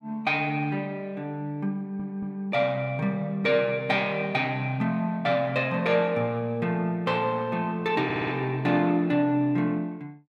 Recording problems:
audio stuttering; at 2 s and at 8 s

